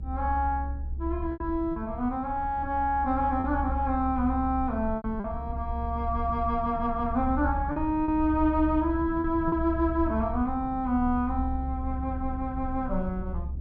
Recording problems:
rumble; below 70 Hz, strongest tone 66 Hz, SNR 7 dB
packet loss; 3% of the sound replaced, filled with repeated pitch periods

